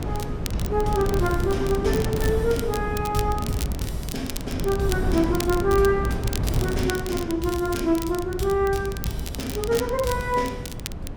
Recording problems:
wind on the microphone; below 240 Hz, SNR 5 dB
crackling; vinyl, SNR 12 dB

